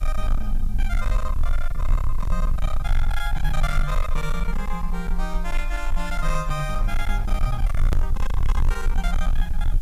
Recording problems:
distorted audio; hard clipping, signal-to-distortion ratio 7 dB
background hiss; slope -1 dB per octave, SNR 23 dB
low-frequency rumble; below 40 Hz, strongest tone 20 Hz, SNR -4 dB
hard cut with a click; at 8 s

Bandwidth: 15 kHz